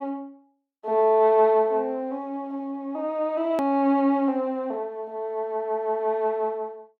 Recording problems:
hard cut with a click; at 3.5 s

